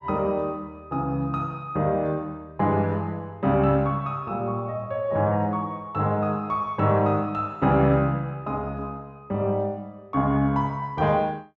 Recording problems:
none

